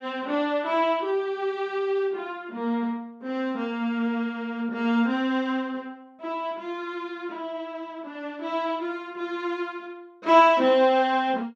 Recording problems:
none

